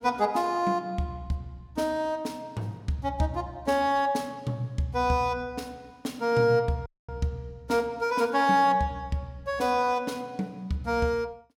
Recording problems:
audio cutting out; at 7 s

